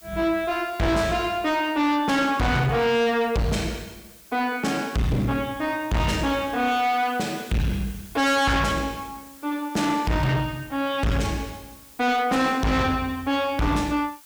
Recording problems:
distortion; soft clipping, signal-to-distortion ratio 7 dB
background hiss; slope +2 dB per octave, SNR 23 dB

